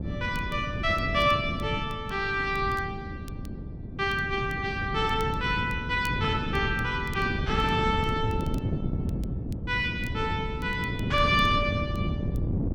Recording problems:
wind noise; below 230 Hz, SNR 5 dB
crackling; vinyl, SNR 27 dB

